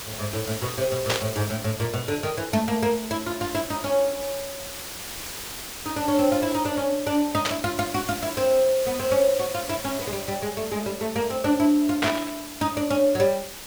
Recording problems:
background hiss; slope -1 dB per octave, SNR 9 dB
burst of static; at 1 s, at 7.5 s and at 12 s; peak +4 dB vs average level

